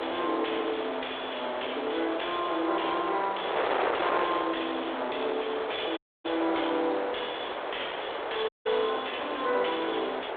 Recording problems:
telephone audio; 320 Hz to 3.6 kHz, G.726
distorted audio; soft clipping, signal-to-distortion ratio 9 dB
wind noise; below 1.4 kHz, SNR 3 dB
dropout; at 6 s and at 8.5 s

